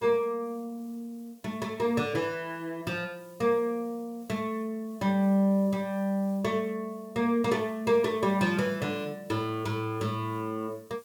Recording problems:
hiss; SNR 28 dB

